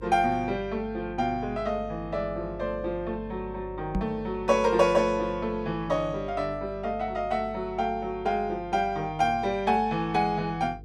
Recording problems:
hum; 50 Hz, harmonics up to 500 Hz, SNR 17 dB
microphone bump; at 4 s; peak +2 dB vs average level

